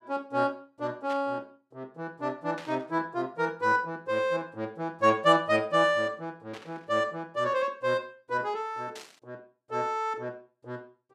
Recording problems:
burst of static; 4 times, first at 1 s; peak -11 dB vs average level

